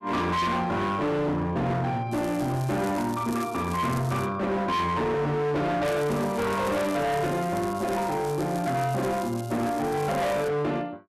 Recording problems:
distorted audio; hard clipping, signal-to-distortion ratio 8 dB
crackle; from 2 to 4.5 s and from 6 to 10 s; loose cable, SNR 18 dB

